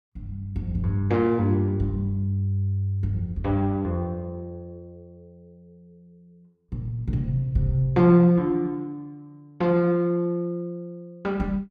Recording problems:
none

